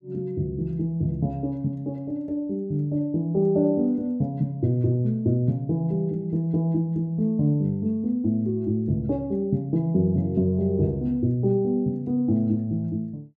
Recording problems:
none

